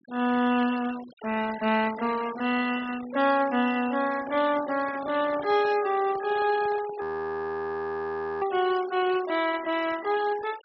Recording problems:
treble cut off; nothing above 5.5 kHz
denoising artefacts; signal-to-artefact ratio 17 dB
microphone handling noise; from 4 to 7 s; peak -13 dB vs average level
audio freezing; at 7 s for 1.5 s

